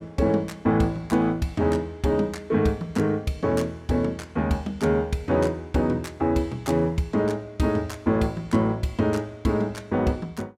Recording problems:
none

